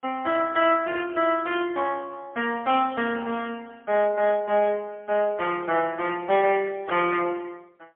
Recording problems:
telephone audio; 280 Hz to 3.3 kHz, AMR-NB, then MP3

